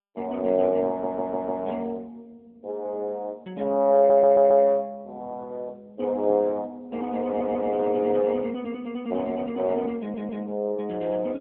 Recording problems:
phone line; 220 Hz to 3.7 kHz, AMR-NB
audio stuttering; 4 times, first at 1 s

